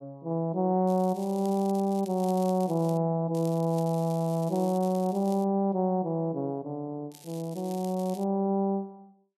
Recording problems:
crackle; from 1 to 3 s, from 3.5 to 5.5 s and from 7 to 8 s; loose cable, SNR 21 dB

